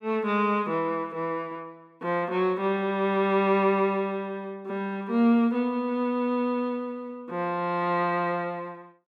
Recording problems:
none

